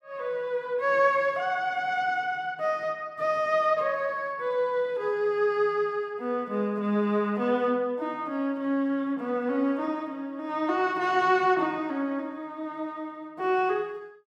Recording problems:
none

